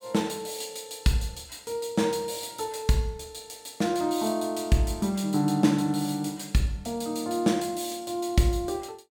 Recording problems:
none

